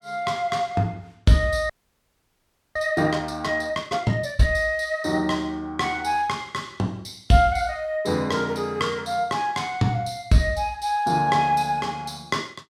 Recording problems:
frozen audio; at 1.5 s for 1 s

